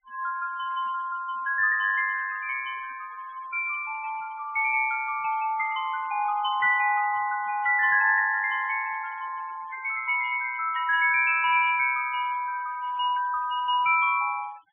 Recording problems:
low-pass filter; nothing above 3.4 kHz
denoising artefacts; signal-to-artefact ratio 20 dB

